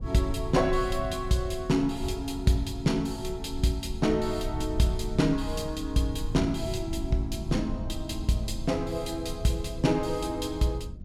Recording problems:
rumble; below 100 Hz, SNR 9 dB

